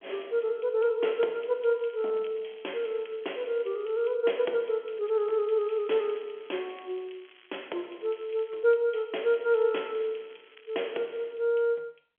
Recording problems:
phone line; 320 Hz to 3.4 kHz, G.711
crackling; from 1.5 to 4 s, from 5 to 8.5 s and from 9.5 to 11 s; loose cable, SNR 27 dB

